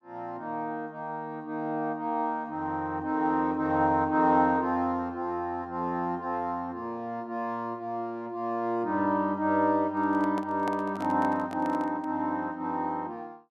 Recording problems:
microphone handling noise; from 10 to 12 s; peak -5 dB vs average level

